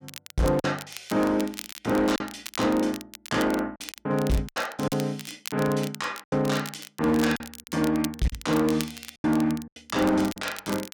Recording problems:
distortion; hard clipping, signal-to-distortion ratio 12 dB
crackling; vinyl, SNR 14 dB
packet loss; 7% of the sound replaced, filled with silence

